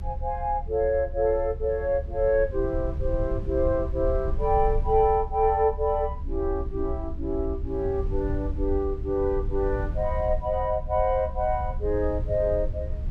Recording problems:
low-frequency rumble; below 70 Hz, SNR 7 dB

